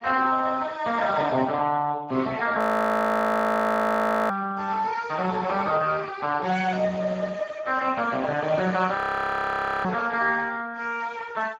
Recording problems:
codec artefacts; Speex, log-spectral distance 4 dB, nothing above 16.1 kHz
frozen audio; at 2.5 s for 1.5 s and at 9 s for 1 s

